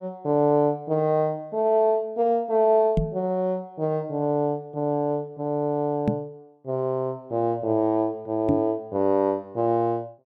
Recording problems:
microphone thump; at 3 s, at 6 s and at 8.5 s; peak +4 dB vs average level

